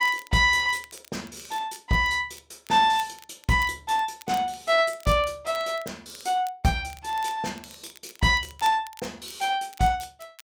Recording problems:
crackling; vinyl, SNR 23 dB

